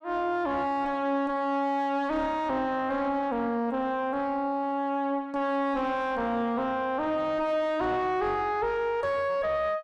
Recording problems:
distorted audio; soft clipping, signal-to-distortion ratio 7 dB

